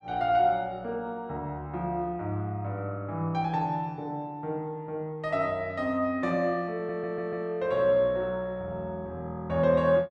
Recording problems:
audio stuttering; at 7 s

